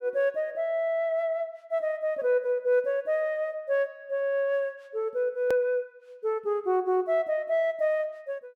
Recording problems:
edit click; at 5.5 s

